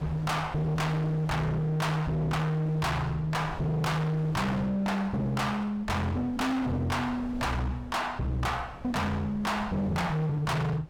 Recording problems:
distorted audio; hard clipping, uneven, signal-to-distortion ratio 6 dB
wind on the microphone; below 540 Hz, SNR 16 dB

